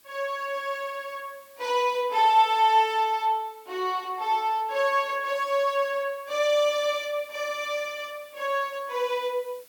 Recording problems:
hiss; slope 0 dB per octave, SNR 27 dB

